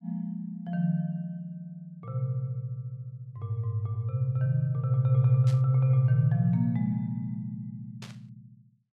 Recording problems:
burst of static; at 5.5 s and at 8 s; peak -13 dB vs average level

